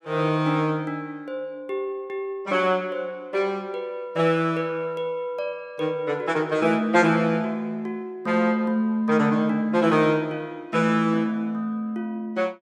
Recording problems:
none

